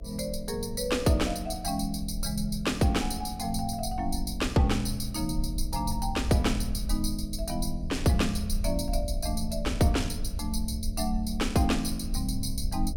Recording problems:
electrical hum; 60 Hz, harmonics up to 660 Hz, SNR 24 dB
rumble; below 66 Hz, SNR 7 dB

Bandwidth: 17 kHz